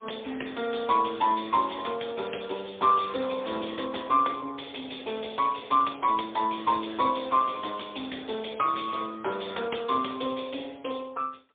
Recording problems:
telephone audio; 280 Hz to 3.6 kHz, AMR-NB, then MP3

